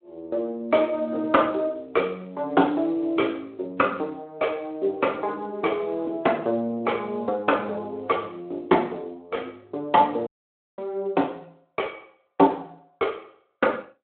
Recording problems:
phone line; 280 Hz to 3.4 kHz, Speex
dropout; at 10 s for 0.5 s

